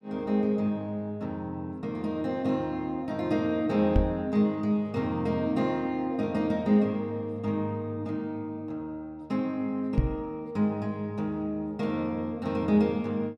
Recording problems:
microphone bump; at 4 s and at 10 s; peak +8 dB vs average level

